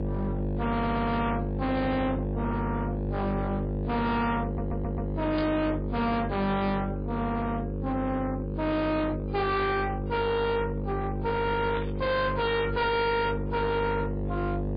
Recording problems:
lossy codec; MP3, log-spectral distance 2 dB, nothing above 4.4 kHz
distorted audio; hard clipping, signal-to-distortion ratio 6 dB
hum; 50 Hz, harmonics up to 700 Hz, SNR 3 dB
audio stuttering; at 1 s and at 4.5 s
burst of static; at 5.5 s and at 12 s; peak -6 dB vs average level

